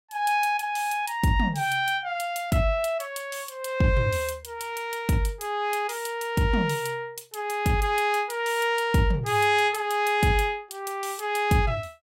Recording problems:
none

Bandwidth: 16.5 kHz